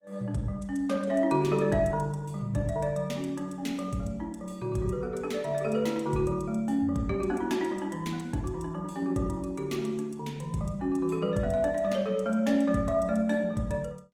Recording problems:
lossy compression; Opus, log-spectral distance 2 dB, nothing above 19 kHz

